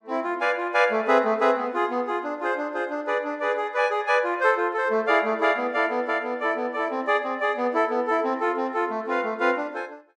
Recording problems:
none

